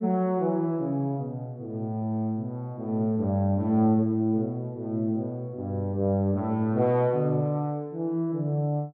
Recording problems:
none

